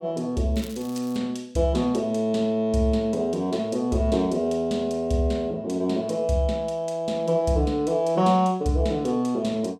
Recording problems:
crackle; at 0.5 s; loose cable, SNR 22 dB

